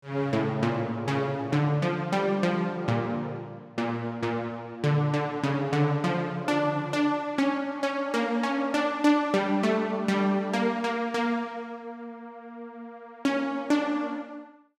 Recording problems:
none

